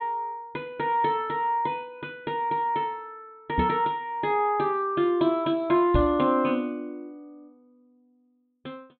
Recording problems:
treble missing; nothing above 4 kHz
microphone thump; at 3.5 s and at 6 s; peak +4 dB vs average level

